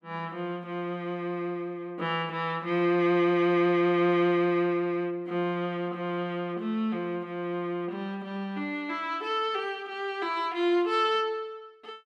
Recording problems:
none

